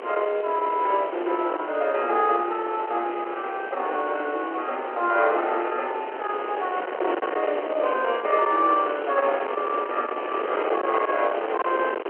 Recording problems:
telephone audio; 370 Hz to 3.3 kHz, G.711
distortion; soft clipping, signal-to-distortion ratio 15 dB
wind on the microphone; below 1.1 kHz, SNR 7 dB

